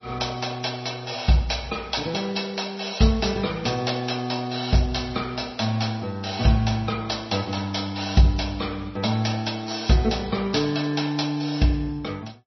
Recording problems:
codec artefacts; MP3, log-spectral distance 6 dB, nothing above 5.8 kHz

